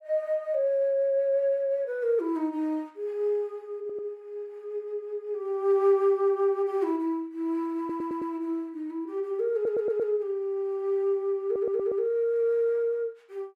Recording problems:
stutter; 4 times, first at 4 s

